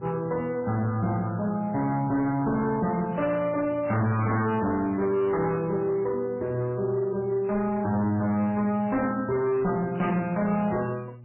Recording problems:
lossy codec; MP3, log-spectral distance 2 dB, nothing above 2.5 kHz
distorted audio; hard clipping, signal-to-distortion ratio 11 dB
hum; 60 Hz, harmonics up to 600 Hz, SNR 20 dB

